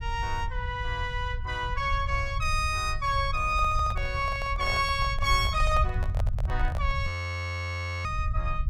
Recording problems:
rumble; below 88 Hz, SNR 4 dB
handling noise; from 3.5 to 7 s; peak -5 dB vs average level
audio freezing; at 7 s for 1 s

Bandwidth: 17 kHz